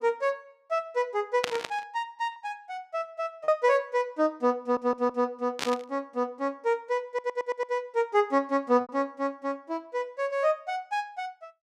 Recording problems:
lost packets; 1.7% of the sound replaced, filled with repeated pitch periods
burst of static; at 1.5 s and at 5.5 s; peak +4 dB vs average level
stutter; at 4.5 s and at 7 s

